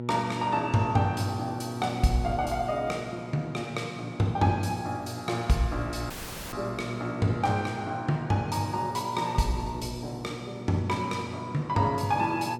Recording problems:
hum; 60 Hz, harmonics up to 960 Hz, SNR 10 dB
dropout; at 6 s

